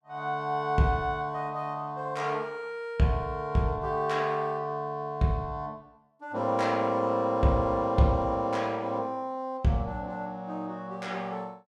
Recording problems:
none

